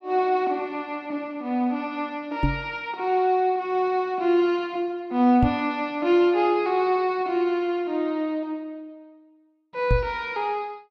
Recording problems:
microphone thump; at 2.5 s, at 5.5 s and at 10 s; peak +5 dB vs average level

